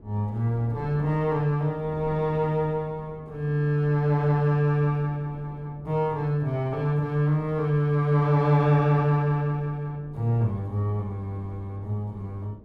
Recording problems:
wind on the microphone; below 340 Hz, SNR 21 dB

